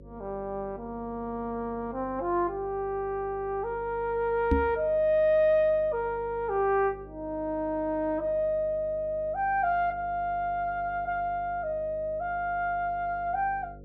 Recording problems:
hum; 50 Hz, harmonics up to 550 Hz, SNR 20 dB
microphone thump; at 4.5 s; peak +6 dB vs average level

